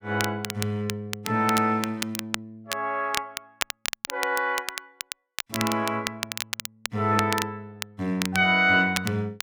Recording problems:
crackle; vinyl, SNR 8 dB

